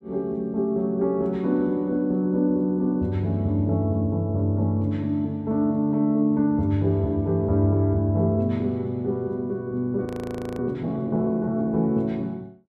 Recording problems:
frozen audio; at 10 s for 0.5 s

